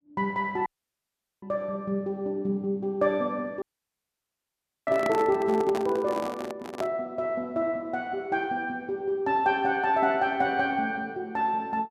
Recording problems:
audio cutting out; at 0.5 s for 1 s and at 3.5 s for 1.5 s
handling noise; from 5 to 7 s; peak 0 dB vs average level

